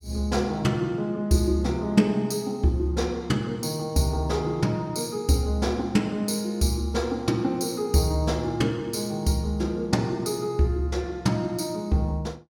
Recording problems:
none

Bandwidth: 17 kHz